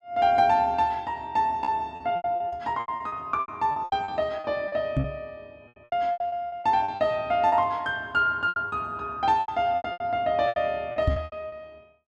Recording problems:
packet loss; 15% of the sound replaced, filled with repeated pitch periods
microphone thump; at 5 s and at 11 s; peak +5 dB vs average level

